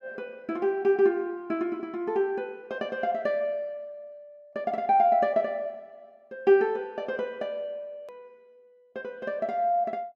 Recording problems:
hard cut with a click; at 8 s

